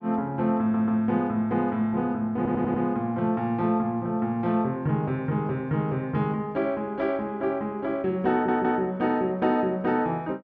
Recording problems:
stutter; at 0.5 s, at 2.5 s and at 8.5 s

